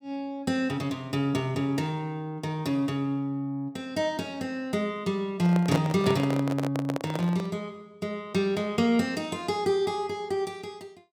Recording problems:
handling noise; from 5.5 to 7.5 s; peak +3 dB vs average level

